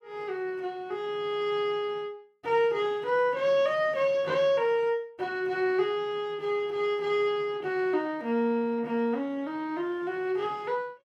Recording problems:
none

